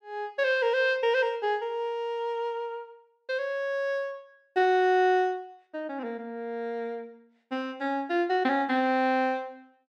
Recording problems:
none

